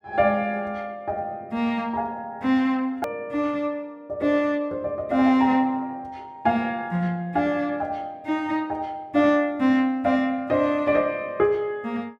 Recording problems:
edit click; at 3 s

